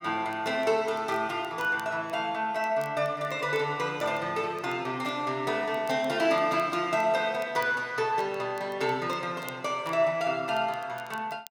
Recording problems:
crackling; vinyl, SNR 26 dB

